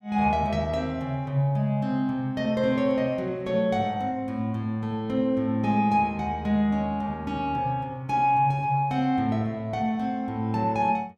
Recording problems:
none

